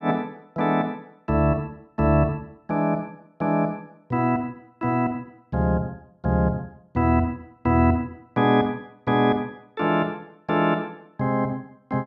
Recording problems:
none

